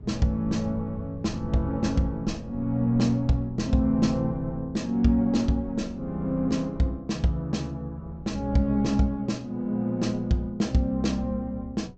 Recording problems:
treble missing; nothing above 8 kHz
wind noise; below 130 Hz, SNR 18 dB

